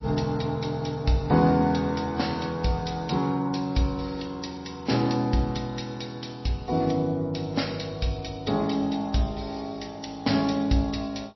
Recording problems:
lossy codec; MP3, log-spectral distance 7 dB, nothing above 5.8 kHz

